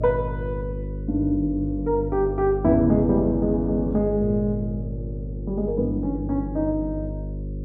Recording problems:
electrical hum; 50 Hz, harmonics up to 550 Hz, SNR 8 dB

